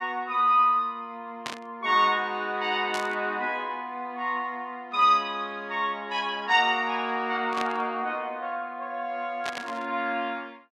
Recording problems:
static burst; 4 times, first at 1.5 s; peak -3 dB vs average level

